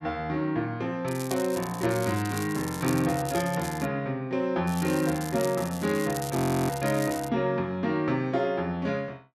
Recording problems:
crackle; from 1 to 4 s and from 4.5 to 7.5 s; loose cable, SNR 12 dB
frozen audio; at 6.5 s

